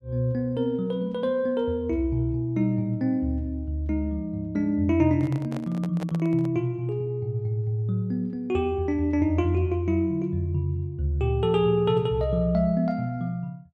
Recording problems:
microphone handling noise; from 5 to 6.5 s; peak -7 dB vs average level

